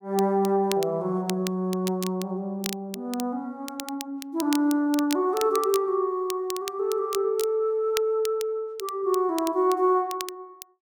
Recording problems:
crackle; vinyl, SNR 13 dB

